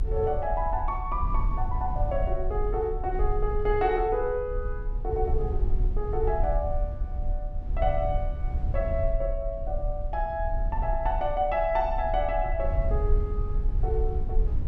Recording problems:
low-frequency rumble; below 60 Hz, SNR 2 dB

